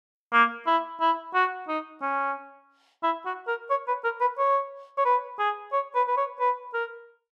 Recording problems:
none

